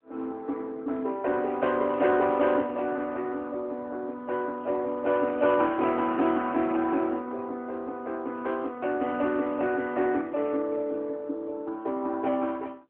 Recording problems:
phone line; 240 Hz to 3.3 kHz, AMR-NB

